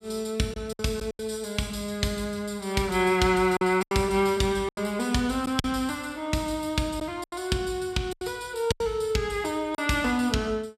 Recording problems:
packet loss; 7% of the sound replaced, filled with silence

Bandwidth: 14.5 kHz